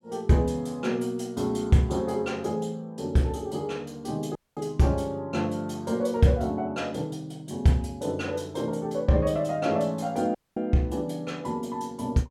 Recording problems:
audio cutting out; at 4.5 s and at 10 s

